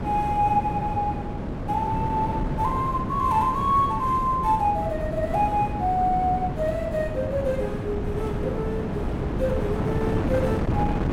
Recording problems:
wind on the microphone; below 380 Hz, SNR 3 dB

